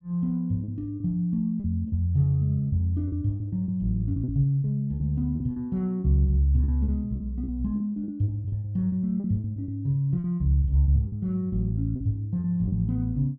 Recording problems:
packet loss; 12% of the sound replaced, filled with repeated pitch periods

